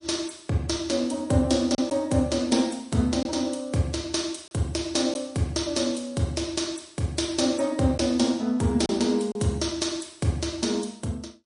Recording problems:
lossy compression; MP3, log-spectral distance 4 dB, nothing above 10.4 kHz
packet loss; 1.3% of the sound replaced, filled with silence

